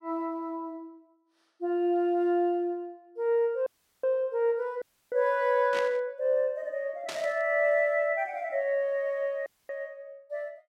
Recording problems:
audio cutting out; at 3.5 s, at 5 s and at 9.5 s
burst of static; at 5.5 s and at 7 s; peak -5 dB vs average level

